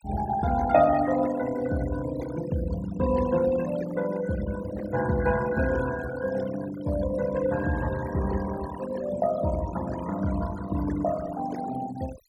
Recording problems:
noise reduction artefacts; signal-to-artefact ratio 14 dB

